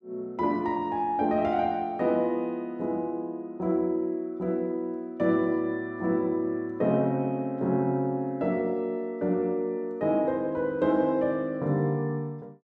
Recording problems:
none

